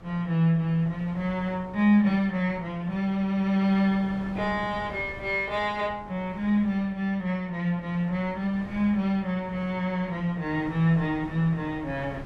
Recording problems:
hum; 60 Hz, harmonics up to 660 Hz, SNR 27 dB
wind noise; below 620 Hz, SNR 19 dB

